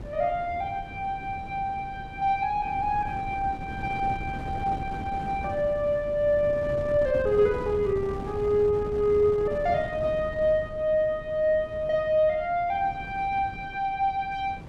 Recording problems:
wind noise; below 320 Hz, SNR 12 dB

